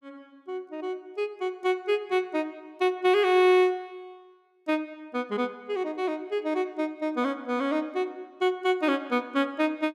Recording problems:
none

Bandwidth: 14.5 kHz